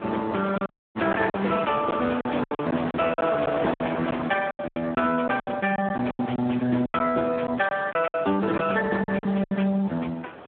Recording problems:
telephone audio; 170 Hz to 2.6 kHz, Speex
wind on the microphone; below 1.4 kHz, SNR 11 dB
packet loss; 12% of the sound replaced, filled with silence
audio cutting out; at 0.5 s

